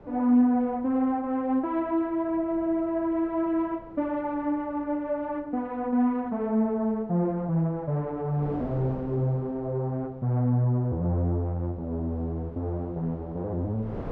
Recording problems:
wind noise; below 550 Hz, SNR 20 dB

